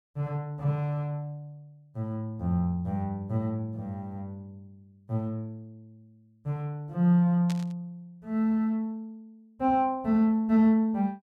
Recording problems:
static burst; at 7.5 s; peak -9 dB vs average level

